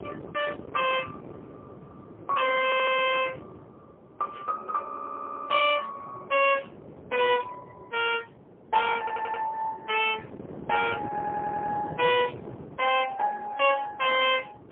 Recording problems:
phone line; 240 Hz to 3.4 kHz, AMR-NB, then MP3
wind on the microphone; below 490 Hz, SNR 17 dB
audio stuttering; 4 times, first at 2.5 s

